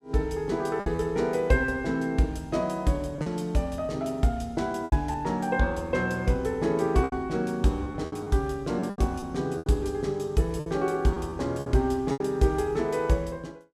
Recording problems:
lost packets; 7% of the sound replaced, filled with repeated pitch periods

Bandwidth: 14.5 kHz